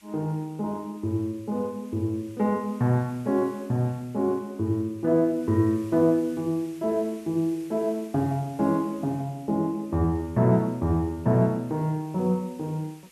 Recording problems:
hiss; SNR 27 dB

